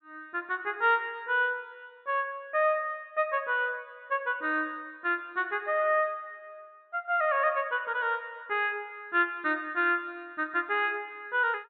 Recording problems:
treble missing; nothing above 4 kHz

